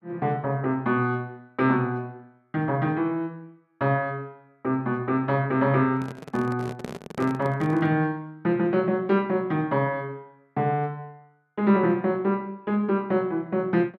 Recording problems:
handling noise; from 6 to 8 s; peak -4 dB vs average level

